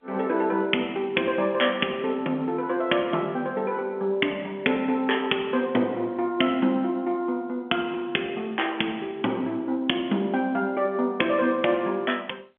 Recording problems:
phone line; 190 Hz to 3.4 kHz, G.711

